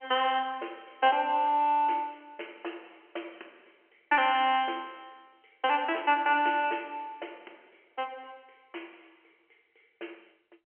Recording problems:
telephone audio; 300 Hz to 3.1 kHz, G.711

